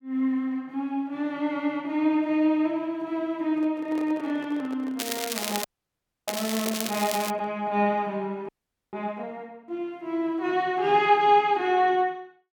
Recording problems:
handling noise; from 3.5 to 7.5 s; peak -9 dB vs average level
crackling; from 5 to 7.5 s; loose cable, SNR 6 dB
frozen audio; at 5.5 s for 0.5 s and at 8.5 s

